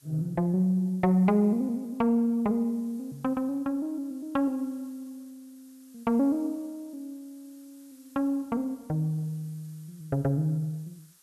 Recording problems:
hiss; slope +1 dB per octave, SNR 29 dB

